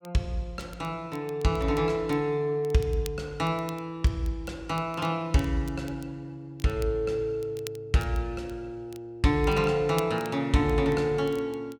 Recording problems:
crackling; vinyl, SNR 22 dB

